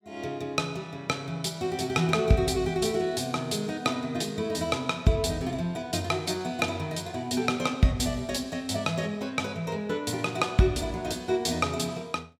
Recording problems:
none

